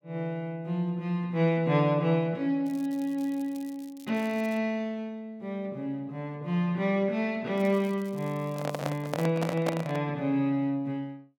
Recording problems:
crackling; from 2.5 to 4.5 s and from 7.5 to 9.5 s; loose cable, SNR 25 dB
microphone handling noise; from 8.5 to 10 s; peak +3 dB vs average level

